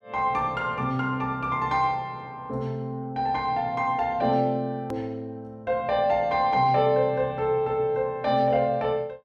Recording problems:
click at an edit; at 5 s

